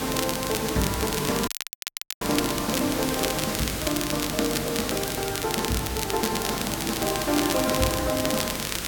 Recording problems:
electrical hum; 50 Hz, harmonics up to 550 Hz, SNR 15 dB
background hiss; slope -2 dB per octave, SNR 3 dB
crackle; vinyl, SNR 4 dB
audio cutting out; at 1.5 s for 0.5 s

